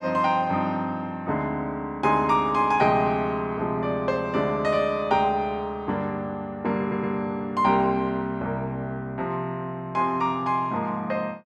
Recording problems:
stutter; at 7 s

